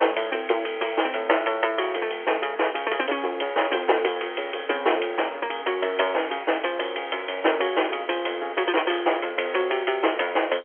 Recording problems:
phone line; 300 Hz to 3.3 kHz, G.711

